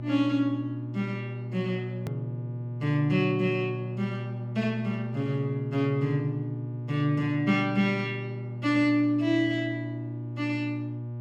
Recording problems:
hum; 60 Hz, harmonics up to 600 Hz, SNR 7 dB
hard cut with a click; at 2 s

